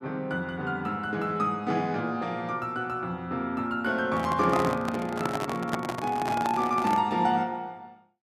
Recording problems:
handling noise; from 4 to 7 s; peak +2 dB vs average level

